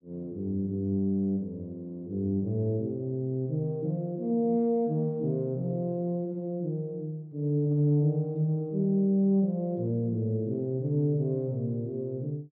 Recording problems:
none

